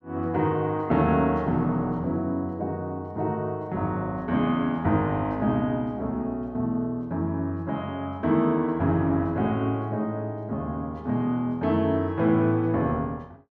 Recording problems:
none

